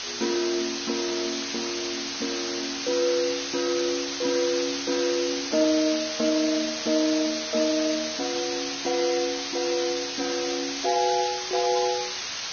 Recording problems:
lossy codec; Vorbis, log-spectral distance 16 dB, nothing above 5.3 kHz
background hiss; slope +2 dB per octave, SNR 3 dB

